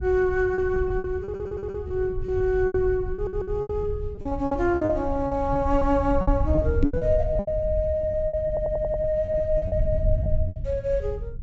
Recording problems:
treble missing; nothing above 7.8 kHz
low-frequency rumble; below 88 Hz, SNR 6 dB
packet loss; 15% of the sound replaced, filled with repeated pitch periods
stutter; at 1 s, at 3 s and at 8.5 s
knock on the microphone; at 7 s; peak +5 dB vs average level

